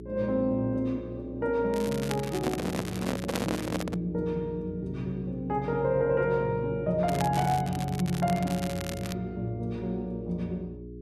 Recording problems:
hum; 60 Hz, harmonics up to 420 Hz, SNR 12 dB
crackle; from 1.5 to 4 s and from 7 to 9 s; loose cable, SNR 12 dB
microphone handling noise; from 2.5 to 4 s; peak +3 dB vs average level

